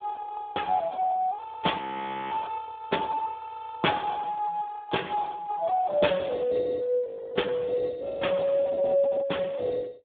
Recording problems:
phone line; 220 Hz to 3.6 kHz, Speex
audio freezing; at 2 s for 0.5 s and at 7 s

